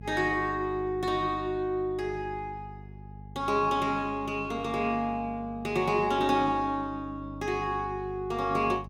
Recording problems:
electrical hum; 50 Hz, harmonics up to 450 Hz, SNR 15 dB

